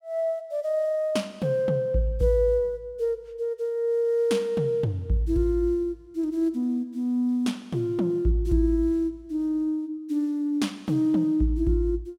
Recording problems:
none

